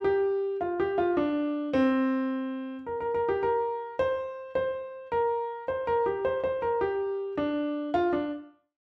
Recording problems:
none

